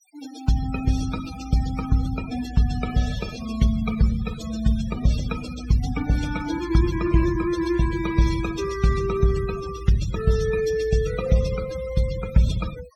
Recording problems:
noise reduction artefacts; signal-to-artefact ratio 14 dB

